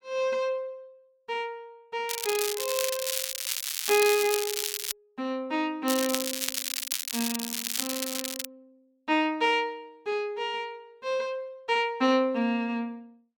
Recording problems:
crackle; from 2 to 5 s and from 6 to 8.5 s; loose cable, SNR 1 dB

